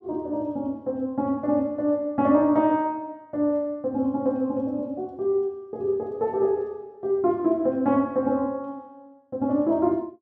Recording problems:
none

